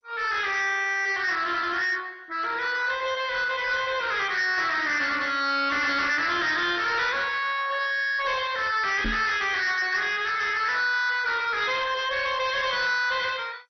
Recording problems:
codec artefacts; MP2, log-spectral distance 5 dB, nothing above 6 kHz
distorted audio; soft clipping, signal-to-distortion ratio 11 dB
microphone thump; at 9 s; peak -2 dB vs average level

